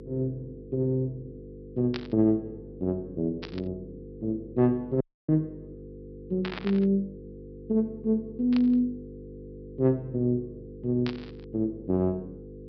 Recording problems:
treble missing; nothing above 5.5 kHz
hum; 50 Hz, harmonics up to 500 Hz, SNR 15 dB
static burst; 5 times, first at 2 s; peak -4 dB vs average level
dropout; at 5 s

